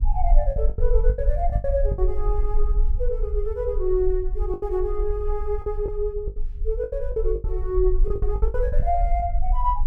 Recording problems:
low-frequency rumble; below 46 Hz, SNR 0 dB
lost packets; 11% of the sound replaced, filled with the last packet

